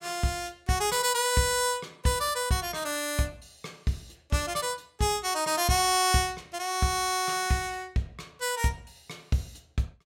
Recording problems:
none

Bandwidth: 16.5 kHz